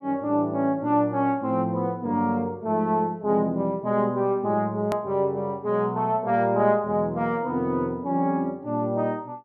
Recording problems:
hard cut with a click; at 5 s

